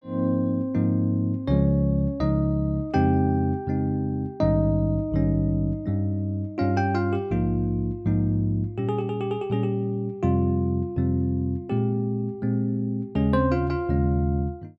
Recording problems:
none

